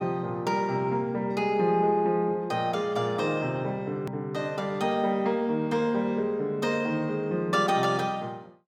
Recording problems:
click at an edit; at 4 s

